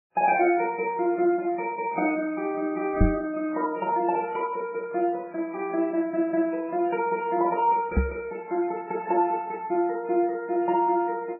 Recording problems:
lossy codec; MP3, then AAC, log-spectral distance 2 dB, nothing above 2.4 kHz
microphone bump; at 3 s and at 8 s; peak +7 dB vs average level

